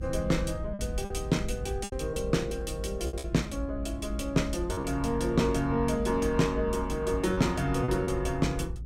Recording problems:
rumble; below 74 Hz, strongest tone 52 Hz, SNR 8 dB
lost packets; 6% of the sound replaced, filled with repeated pitch periods

